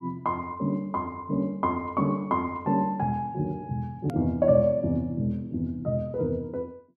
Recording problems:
edit click; at 4 s

